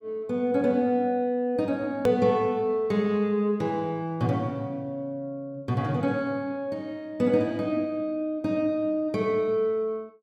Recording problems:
hard cut with a click; at 2 s

